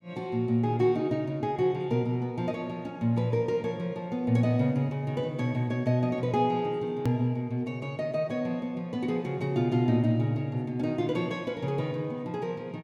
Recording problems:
edit click; at 7 s

